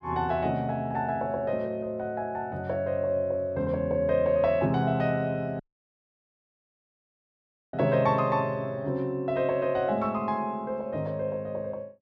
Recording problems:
audio cutting out; at 5.5 s for 2 s

